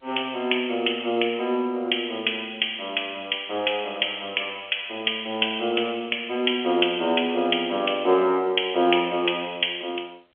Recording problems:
telephone audio; 280 Hz to 3.3 kHz, G.711

